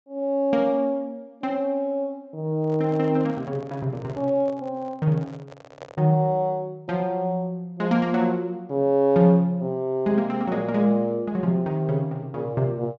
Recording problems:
treble cut off; nothing above 8 kHz
handling noise; from 2.5 to 6 s; peak -10 dB vs average level

